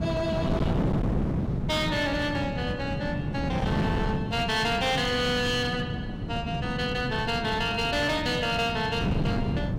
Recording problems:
distorted audio; hard clipping, signal-to-distortion ratio 10 dB
wind on the microphone; below 280 Hz, SNR 2 dB

